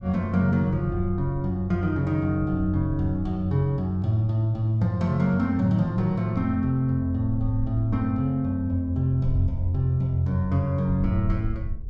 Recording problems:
wind on the microphone; below 74 Hz, SNR 13 dB

